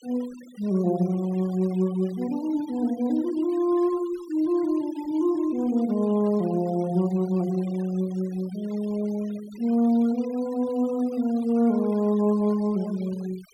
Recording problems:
denoising artefacts; signal-to-artefact ratio 23 dB

